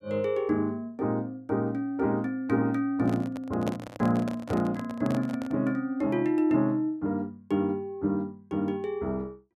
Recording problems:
microphone handling noise; from 3 to 5.5 s; peak -1 dB vs average level

